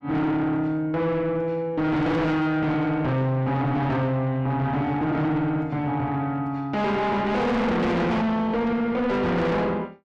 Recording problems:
distortion; soft clipping, signal-to-distortion ratio 5 dB

